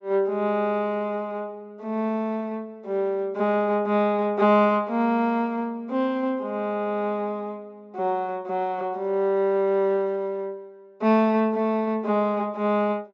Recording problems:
treble cut off; nothing above 8 kHz

